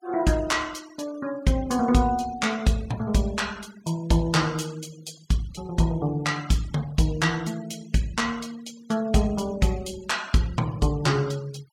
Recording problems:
denoising artefacts; signal-to-artefact ratio 22 dB

